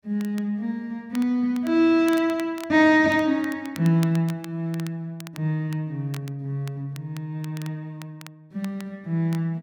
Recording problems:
crackle; vinyl, SNR 22 dB

